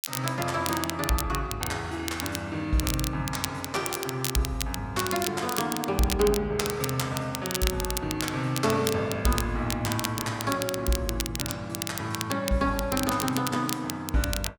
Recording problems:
crackling; vinyl, SNR 5 dB

